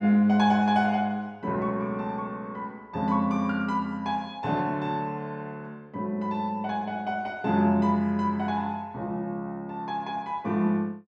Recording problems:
none

